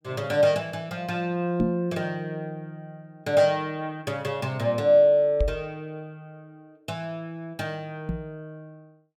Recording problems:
microphone thump; at 1.5 s, at 5.5 s and at 8 s; peak +4 dB vs average level

